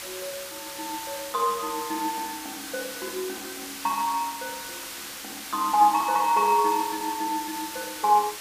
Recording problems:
background hiss; slope +1 dB per octave, SNR 9 dB

